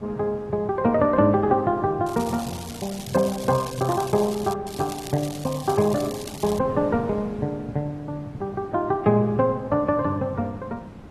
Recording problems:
lossy compression; AAC, log-spectral distance 3 dB
wind noise; below 450 Hz, SNR 18 dB
crackle; from 2 to 4.5 s and from 4.5 to 6.5 s; loose cable, SNR 15 dB

